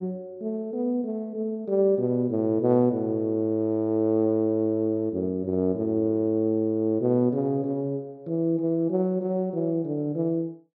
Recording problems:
none

